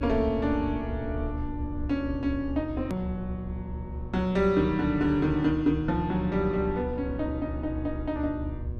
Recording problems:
hum; 60 Hz, harmonics up to 1.1 kHz, SNR 14 dB
low-frequency rumble; below 74 Hz, strongest tone 72 Hz, SNR 9 dB
edit click; at 3 s

